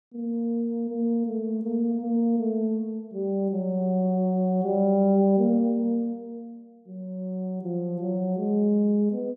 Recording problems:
none

